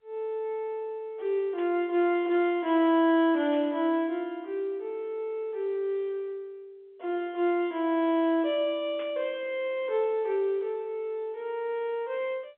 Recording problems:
phone line; 260 Hz to 3.8 kHz, G.711
burst of static; at 1.5 s, at 3.5 s and at 9 s; peak -14 dB vs average level

